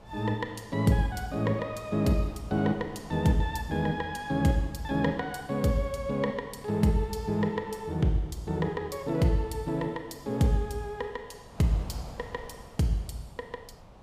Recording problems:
wind noise; below 750 Hz, SNR 20 dB

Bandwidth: 15 kHz